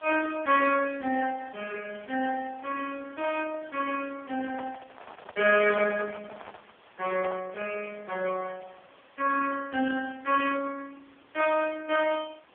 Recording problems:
phone line; 300 Hz to 3 kHz, AMR-NB
hiss; SNR 27 dB
handling noise; from 4.5 to 7.5 s; peak -10 dB vs average level

